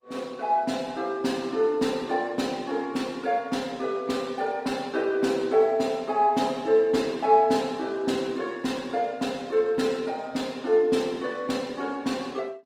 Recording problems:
codec artefacts; Opus, log-spectral distance 3 dB, nothing above 19 kHz

